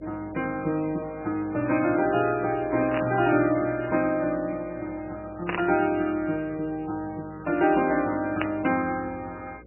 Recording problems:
lossy compression; MP3, log-spectral distance 3 dB, nothing above 2.4 kHz
mains hum; 60 Hz, harmonics up to 540 Hz, SNR 24 dB
static burst; at 3 s, at 5.5 s and at 8.5 s; peak +1 dB vs average level

